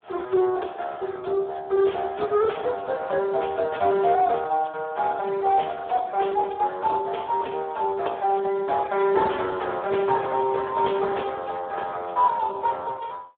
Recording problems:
phone line; 320 Hz to 3.5 kHz, Speex

